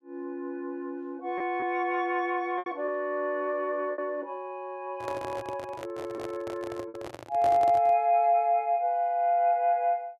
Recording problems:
packet loss; 3% of the sound replaced, filled with repeated pitch periods
microphone handling noise; from 5 to 8 s; peak -5 dB vs average level

